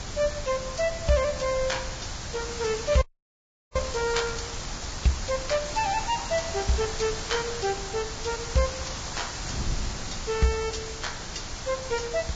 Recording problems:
lossy codec; Vorbis, log-spectral distance 13 dB, nothing above 7.3 kHz
background hiss; slope -1 dB per octave, SNR 6 dB
wind on the microphone; below 130 Hz, SNR 12 dB
audio freezing; at 3 s for 0.5 s

